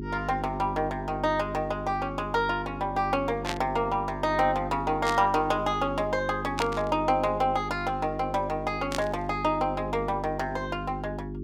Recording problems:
mains hum; 50 Hz, harmonics up to 400 Hz, SNR 9 dB
burst of static; 4 times, first at 3.5 s; peak 0 dB vs average level

